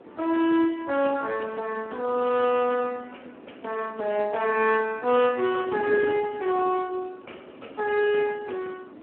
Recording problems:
phone line; 220 Hz to 3.1 kHz, Speex
wind noise; below 520 Hz, SNR 17 dB

